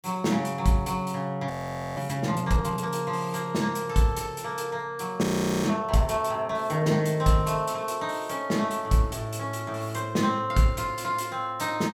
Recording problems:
frozen audio; at 1.5 s and at 5 s

